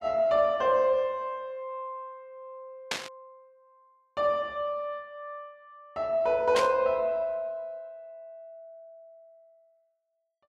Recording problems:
burst of static; at 3 s and at 6.5 s; peak +2 dB vs average level

